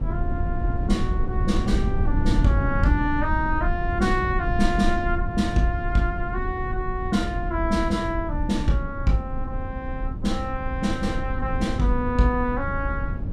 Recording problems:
rumble; below 100 Hz, SNR 3 dB

